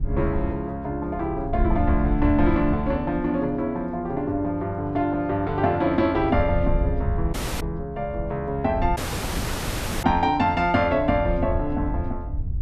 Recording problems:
wind on the microphone; below 84 Hz, SNR 7 dB
audio cutting out; at 7.5 s and at 9 s for 1 s

